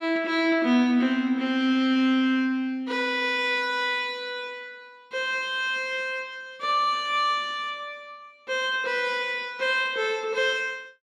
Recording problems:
none

